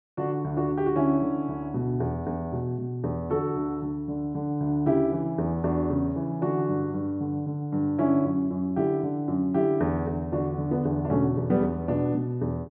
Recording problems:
none

